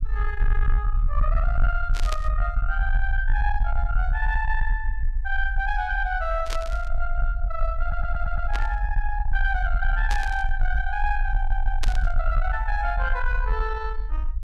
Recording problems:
distorted audio; soft clipping, signal-to-distortion ratio 12 dB
low-frequency rumble; below 48 Hz, SNR -1 dB
burst of static; 5 times, first at 2 s; peak +1 dB vs average level
audio stuttering; at 8 s and at 11 s

